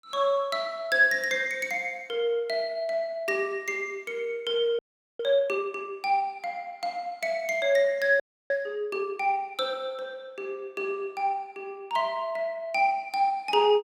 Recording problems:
audio freezing; at 5 s and at 8 s

